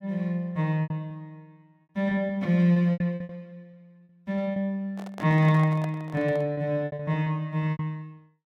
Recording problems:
packet loss; 11% of the sound replaced, filled with repeated pitch periods
handling noise; from 5 to 6.5 s; peak -9 dB vs average level

